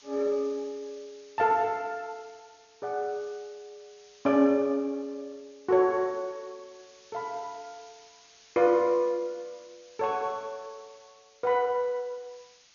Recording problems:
treble cut off; nothing above 6.9 kHz
hiss; slope +3 dB per octave, SNR 27 dB

